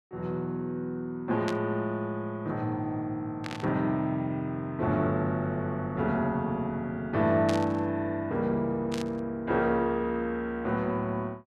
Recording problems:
static burst; 4 times, first at 1.5 s; peak -3 dB vs average level

